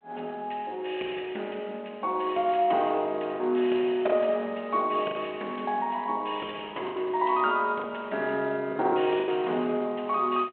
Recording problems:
phone line; 280 Hz to 3.4 kHz, G.726
lost packets; 4% of the sound replaced, filled with the last packet

